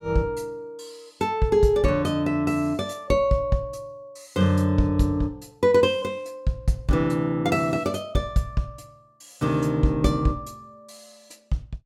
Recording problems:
none

